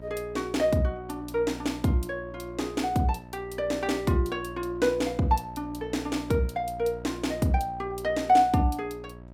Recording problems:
electrical hum; 60 Hz, harmonics up to 1.3 kHz, SNR 16 dB

